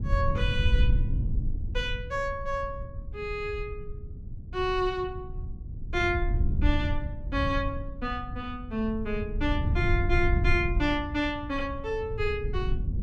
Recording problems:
rumble; below 90 Hz, SNR 1 dB

